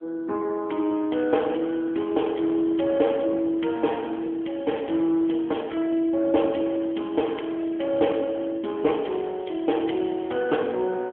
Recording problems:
telephone audio; 260 Hz to 3.3 kHz, AMR-NB

